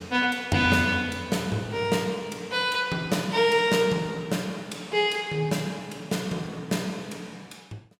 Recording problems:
none

